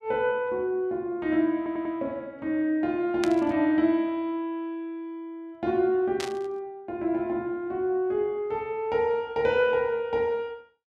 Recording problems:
stutter; at 1.5 s
burst of static; at 3 s and at 6 s; peak -2 dB vs average level

